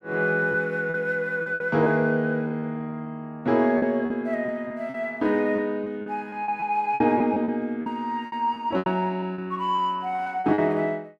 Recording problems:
lost packets; 11% of the sound replaced, filled with repeated pitch periods

